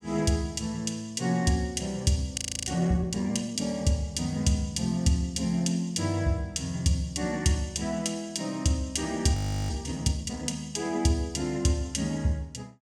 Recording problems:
frozen audio; at 2.5 s and at 9.5 s

